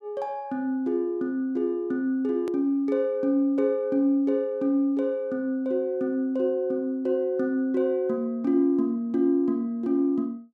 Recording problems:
click at an edit; at 2.5 s

